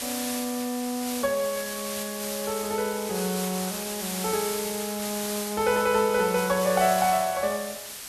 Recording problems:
hiss; slope +1 dB per octave, SNR 6 dB

